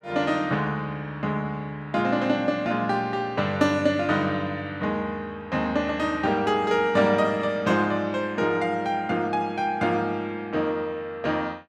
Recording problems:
none

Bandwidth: 13.5 kHz